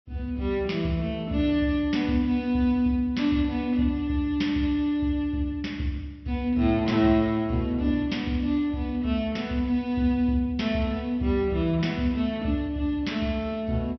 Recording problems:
treble cut off; nothing above 5.8 kHz

